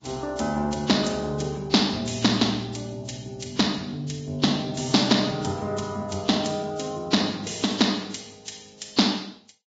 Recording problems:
lossy compression; Vorbis, log-spectral distance 7 dB, nothing above 7.6 kHz

